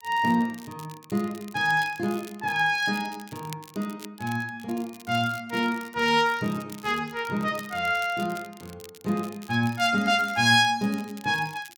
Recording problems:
crackle; vinyl, SNR 21 dB

